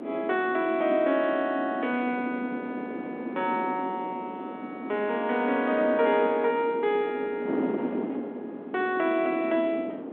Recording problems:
phone line; 190 Hz to 3.5 kHz, G.726
wind on the microphone; below 460 Hz, SNR 8 dB

